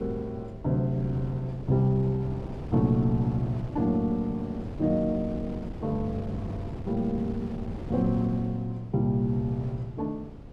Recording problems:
wind on the microphone; below 310 Hz, SNR 10 dB

